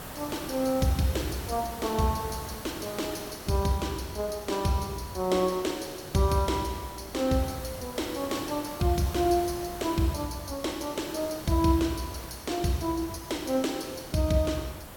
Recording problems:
hiss; slope -5 dB per octave, SNR 12 dB

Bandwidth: 17 kHz